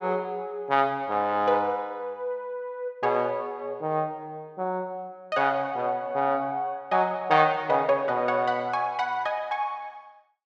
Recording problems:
none

